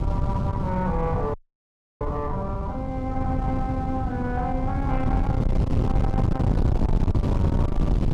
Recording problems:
distortion; soft clipping, signal-to-distortion ratio 13 dB
wind on the microphone; below 170 Hz, SNR -4 dB
frozen audio; at 1.5 s for 0.5 s

